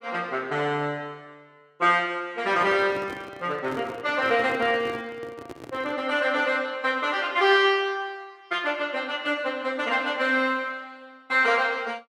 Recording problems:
handling noise; from 2.5 to 6 s; peak -9 dB vs average level

